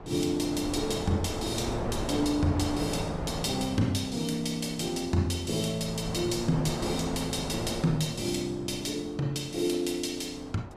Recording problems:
wind on the microphone; below 790 Hz, SNR 7 dB

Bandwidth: 14.5 kHz